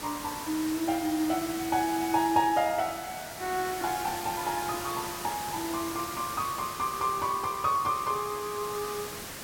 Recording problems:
hiss; slope -2 dB per octave, SNR 8 dB

